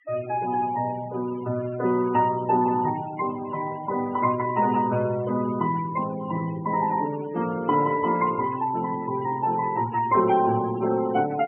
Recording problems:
treble missing; nothing above 3.1 kHz
denoising artefacts; signal-to-artefact ratio 16 dB

